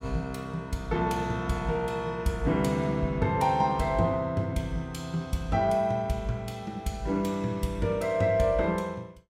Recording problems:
none

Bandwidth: 16 kHz